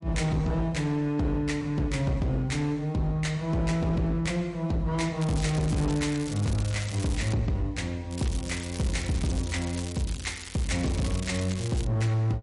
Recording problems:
lossy codec; MP3, log-spectral distance 4 dB, nothing above 11 kHz
distorted audio; hard clipping, signal-to-distortion ratio 11 dB
crackle; from 5 to 7.5 s and from 8 to 12 s; loose cable, SNR 12 dB

